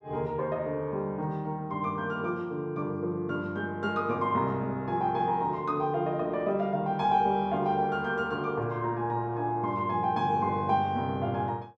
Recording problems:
none

